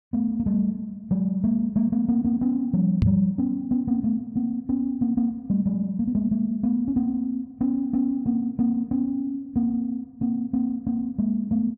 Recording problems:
microphone bump; at 3 s; peak +6 dB vs average level

